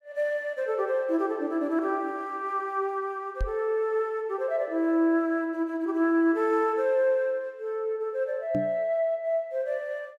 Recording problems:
microphone thump; at 3.5 s and at 8.5 s; peak +1 dB vs average level

